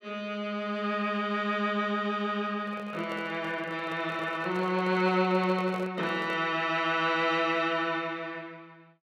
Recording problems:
microphone handling noise; from 2.5 to 6.5 s; peak -8 dB vs average level

